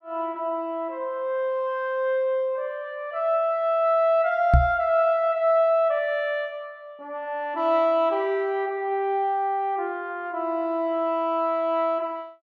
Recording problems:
microphone bump; at 4.5 s; peak +9 dB vs average level

